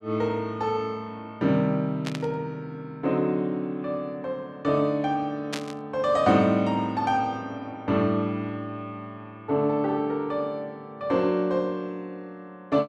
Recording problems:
static burst; at 2 s and at 5.5 s; peak -1 dB vs average level

